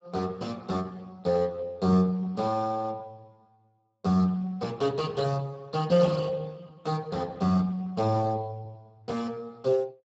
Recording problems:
lossy codec; Speex, log-spectral distance 3 dB, nothing above 7.6 kHz

